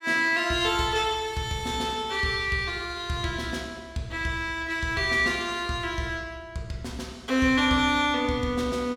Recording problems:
none

